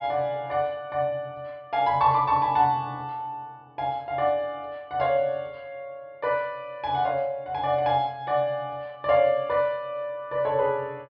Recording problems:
treble missing; nothing above 5.5 kHz

